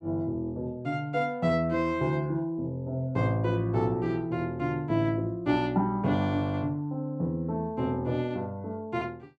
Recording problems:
none

